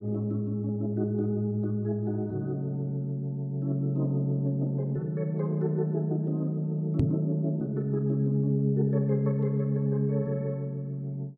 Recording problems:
microphone thump; at 7 s; peak +7 dB vs average level

